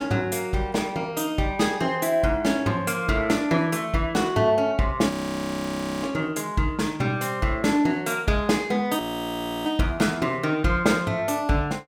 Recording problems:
frozen audio; at 5 s for 1 s and at 9 s for 0.5 s

